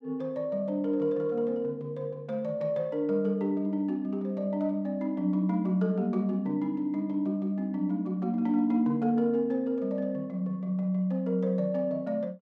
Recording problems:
none

